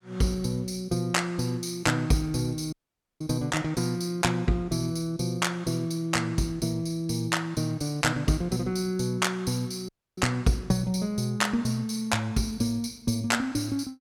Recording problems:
audio cutting out; at 2.5 s and at 10 s

